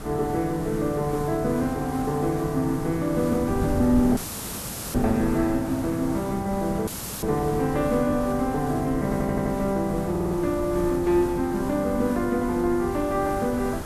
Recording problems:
hiss; slope -6 dB per octave, SNR 12 dB
wind noise; below 160 Hz, SNR 12 dB
dropout; at 4 s for 1 s and at 7 s; filled with static
stutter; at 9 s and at 10 s

